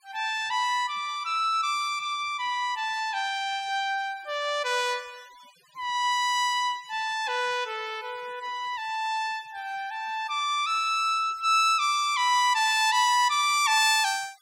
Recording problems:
denoising artefacts; signal-to-artefact ratio 26 dB

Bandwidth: 16 kHz